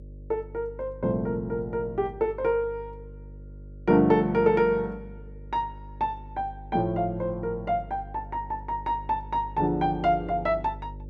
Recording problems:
hum; 50 Hz, harmonics up to 550 Hz, SNR 16 dB

